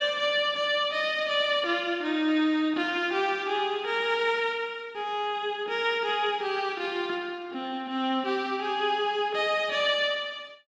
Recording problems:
none

